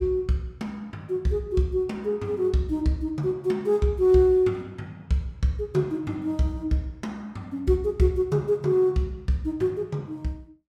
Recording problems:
none

